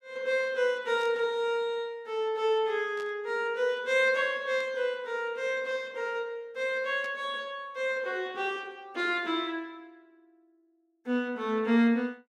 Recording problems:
static burst; 4 times, first at 1 s; peak -14 dB vs average level

